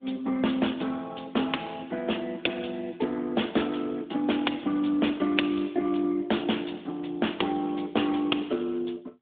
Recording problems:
phone line; 190 Hz to 3.6 kHz, AMR-NB

